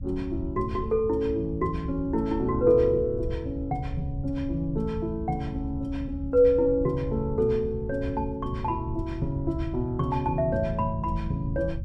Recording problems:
rumble; below 110 Hz, SNR 9 dB

